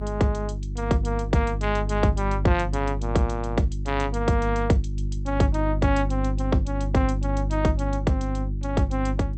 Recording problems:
codec artefacts; G.722, log-spectral distance 2 dB, nothing above 8.2 kHz
hum; 50 Hz, harmonics up to 350 Hz, SNR 3 dB

